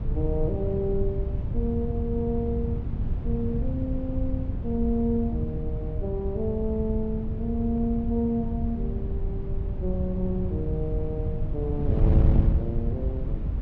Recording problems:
wind noise; below 110 Hz, SNR -1 dB

